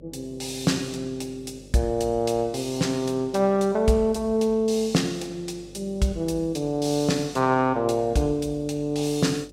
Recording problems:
hum; 50 Hz, harmonics up to 600 Hz, SNR 24 dB

